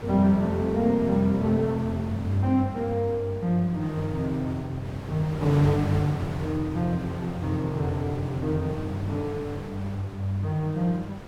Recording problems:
wind noise; below 880 Hz, SNR 13 dB

